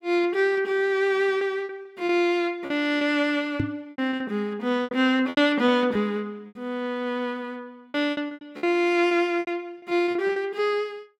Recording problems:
packet loss; 12% of the sound replaced, filled with repeated pitch periods
microphone bump; at 3.5 s; peak +3 dB vs average level

